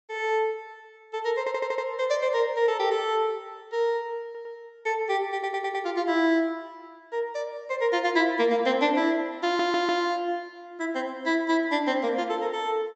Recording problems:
treble missing; nothing above 8 kHz
audio stuttering; 4 times, first at 1.5 s

